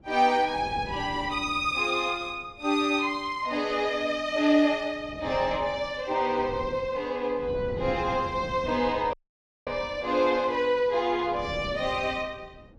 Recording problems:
wind on the microphone; below 340 Hz, SNR 16 dB
dropout; at 9 s for 0.5 s

